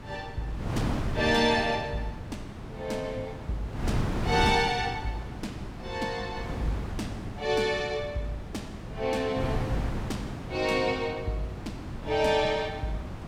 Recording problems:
wind noise; below 350 Hz, SNR 6 dB

